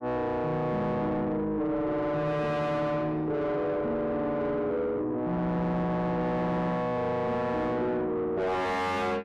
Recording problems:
distorted audio; soft clipping, signal-to-distortion ratio 6 dB

